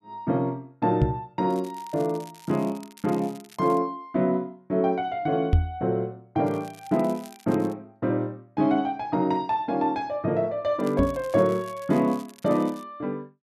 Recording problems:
knock on the microphone; at 1 s, at 5.5 s and at 11 s; peak +9 dB vs average level
crackle; from 1.5 to 4 s, from 6.5 to 8 s and from 11 to 13 s; loose cable, SNR 24 dB

